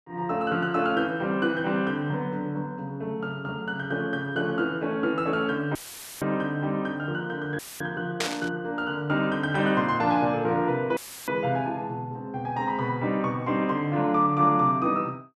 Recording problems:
dropout; at 6 s, at 7.5 s and at 11 s; filled with static
burst of static; at 8 s; peak +3 dB vs average level

